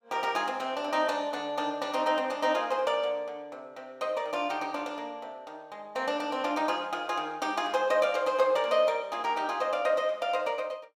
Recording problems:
none

